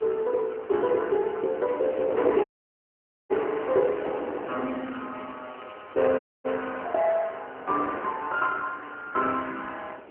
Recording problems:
telephone audio; 220 Hz to 3 kHz, AMR-NB
background hiss; SNR 27 dB
wind noise; below 840 Hz, SNR 12 dB
crackling; from 1.5 to 7 s; loose cable, SNR 24 dB
audio cutting out; at 2.5 s for 1 s and at 6 s

